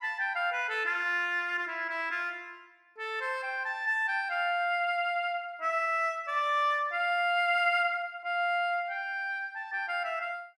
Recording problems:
none

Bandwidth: 14.5 kHz